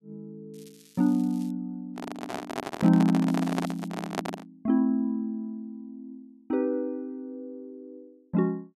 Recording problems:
crackle; at 0.5 s and at 3.5 s; loose cable, SNR 27 dB
microphone handling noise; from 2 to 4.5 s; peak +2 dB vs average level

